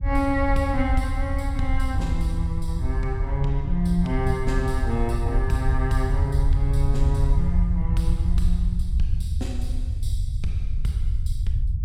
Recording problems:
low-frequency rumble; below 76 Hz, SNR -2 dB

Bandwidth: 16 kHz